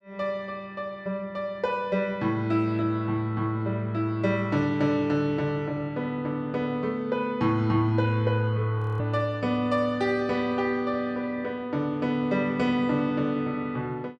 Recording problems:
frozen audio; at 9 s

